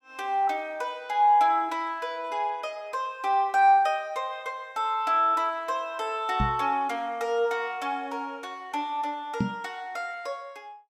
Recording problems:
knock on the microphone; at 6.5 s and at 9.5 s; peak +4 dB vs average level

